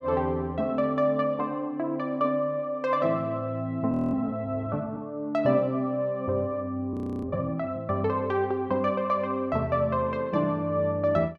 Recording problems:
audio freezing; at 4 s and at 7 s

